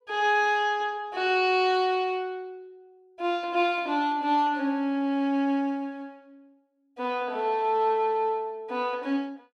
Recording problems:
none

